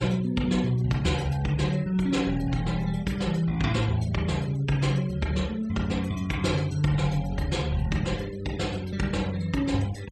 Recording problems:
noise reduction artefacts; signal-to-artefact ratio 20 dB

